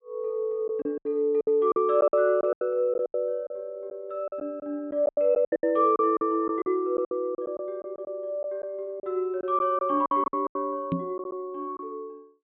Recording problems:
low-pass filter; nothing above 4 kHz
lost packets; 12% of the sound replaced, filled with silence
knock on the microphone; at 11 s; peak +3 dB vs average level

